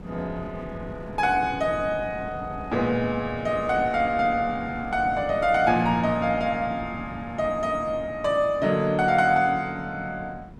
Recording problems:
wind on the microphone; below 260 Hz, SNR 15 dB

